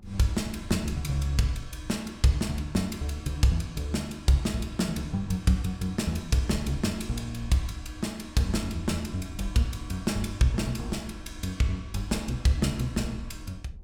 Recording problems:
low-frequency rumble; below 80 Hz, SNR 17 dB

